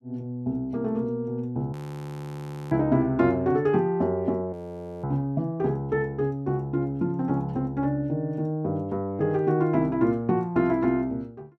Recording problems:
frozen audio; at 1.5 s for 1 s and at 4.5 s for 0.5 s

